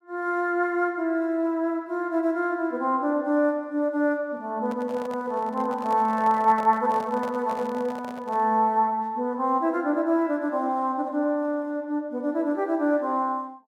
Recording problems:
handling noise; from 4.5 to 8.5 s; peak -8 dB vs average level

